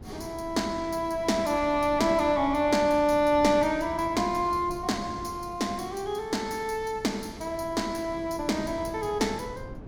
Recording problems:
wind on the microphone; below 320 Hz, SNR 17 dB

